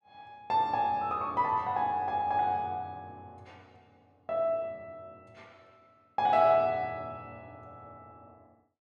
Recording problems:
none

